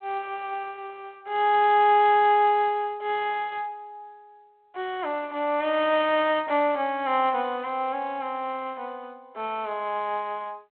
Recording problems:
phone line; 280 Hz to 3.7 kHz, G.726

